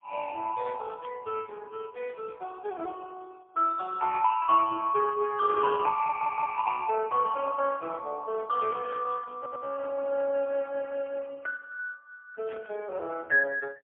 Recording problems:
telephone audio; 280 Hz to 2.3 kHz, AMR-NB, then MP3
burst of static; 4 times, first at 1 s; peak -13 dB vs average level
stutter; at 6 s and at 9.5 s

